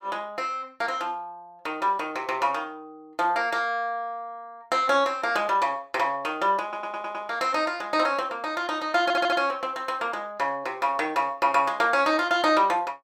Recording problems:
stutter; at 6.5 s and at 9 s

